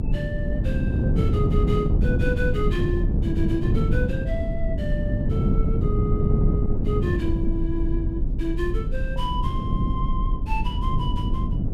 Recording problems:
low-frequency rumble; below 46 Hz, SNR 1 dB
wind noise; below 200 Hz, SNR -6 dB

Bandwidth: 16 kHz